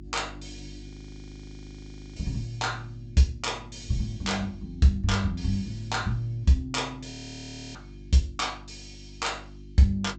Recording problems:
treble missing; nothing above 8 kHz
hum; 50 Hz, harmonics up to 350 Hz, SNR 17 dB
audio freezing; at 1 s for 1.5 s and at 7 s for 0.5 s

